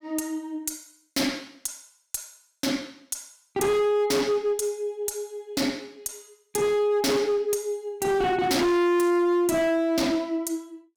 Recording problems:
distorted audio; hard clipping, uneven, signal-to-distortion ratio 7 dB

